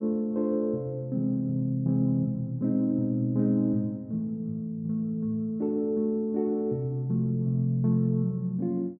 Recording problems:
none

